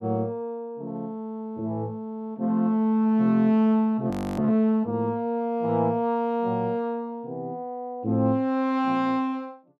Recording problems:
frozen audio; at 4 s

